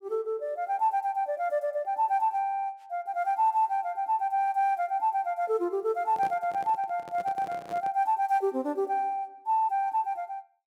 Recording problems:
handling noise; from 6 to 8 s; peak -9 dB vs average level

